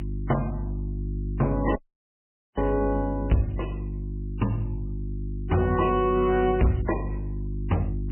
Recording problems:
lossy compression; MP3, log-spectral distance 2 dB, nothing above 3 kHz
distortion; hard clipping, signal-to-distortion ratio 6 dB
electrical hum; 50 Hz, harmonics up to 350 Hz, SNR 6 dB
audio cutting out; at 2 s for 1 s

